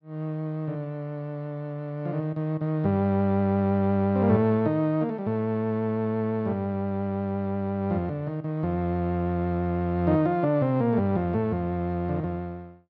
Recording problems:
none

